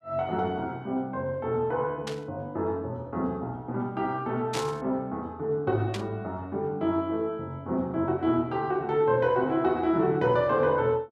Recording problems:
burst of static; at 2 s, at 4.5 s and at 6 s; peak -2 dB vs average level

